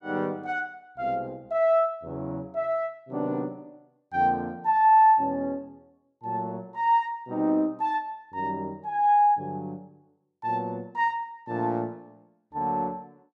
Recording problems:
none

